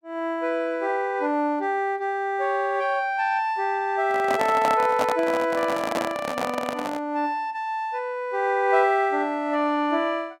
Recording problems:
microphone handling noise; from 4 to 7 s; peak +2 dB vs average level

